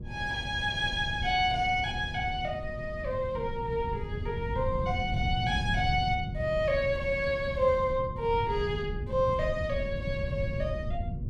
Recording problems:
electrical hum; 60 Hz, harmonics up to 720 Hz, SNR 20 dB
rumble; below 140 Hz, SNR 6 dB

